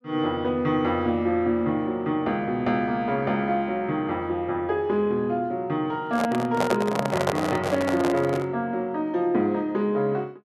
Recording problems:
handling noise; from 6 to 8.5 s; peak +4 dB vs average level

